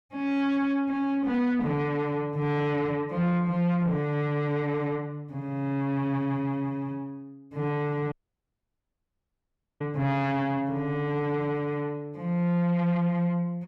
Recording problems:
distorted audio; soft clipping, signal-to-distortion ratio 10 dB
audio cutting out; at 8 s for 1.5 s

